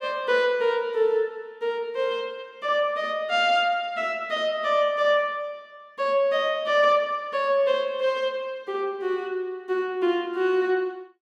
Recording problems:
none

